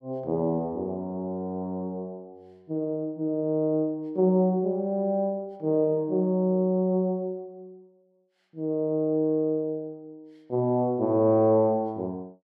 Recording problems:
none

